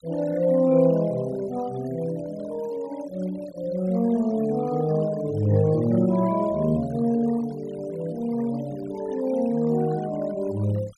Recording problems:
noise reduction artefacts; signal-to-artefact ratio 21 dB

